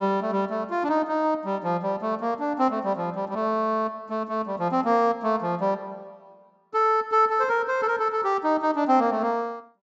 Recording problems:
treble cut off; nothing above 8 kHz

